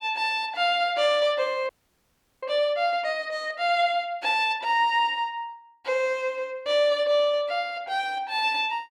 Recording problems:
frozen audio; at 1.5 s for 0.5 s

